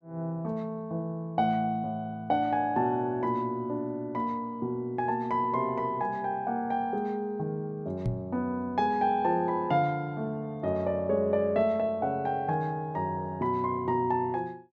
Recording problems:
microphone bump; at 8 s; peak +3 dB vs average level

